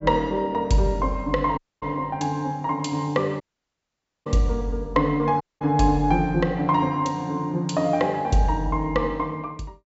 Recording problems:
low-pass filter; nothing above 8 kHz
audio cutting out; at 1.5 s, at 3.5 s for 1 s and at 5.5 s

